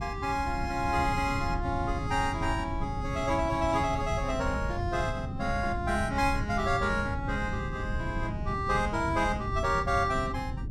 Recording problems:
wind on the microphone; below 150 Hz, SNR 5 dB

